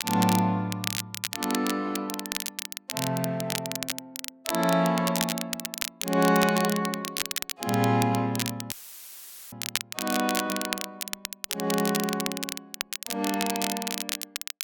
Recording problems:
crackle; vinyl, SNR 5 dB
dropout; at 8.5 s for 1 s; filled with static

